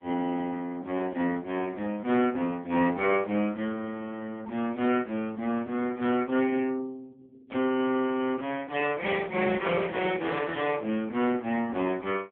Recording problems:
phone line; 190 Hz to 3.3 kHz, AMR-NB

